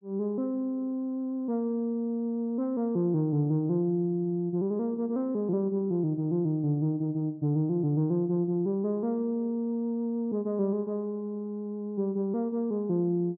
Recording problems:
none

